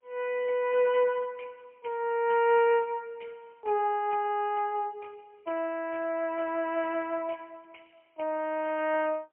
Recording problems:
telephone audio; 320 Hz to 3.1 kHz, AMR-NB, then MP3

